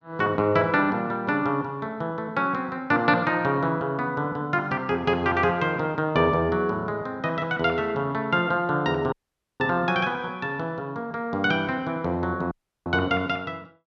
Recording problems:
dropout; at 9 s and at 13 s

